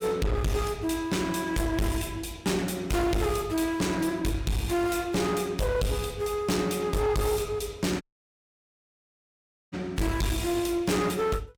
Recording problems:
distortion; hard clipping, uneven, signal-to-distortion ratio 6 dB
audio cutting out; at 8 s for 1.5 s

